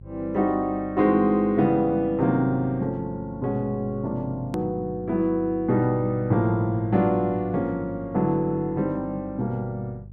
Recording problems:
electrical hum; 50 Hz, harmonics up to 400 Hz, SNR 18 dB
click at an edit; at 4.5 s

